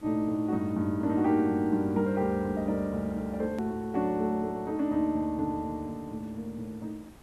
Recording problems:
hiss; slope -6 dB per octave, SNR 24 dB
edit click; at 3.5 s

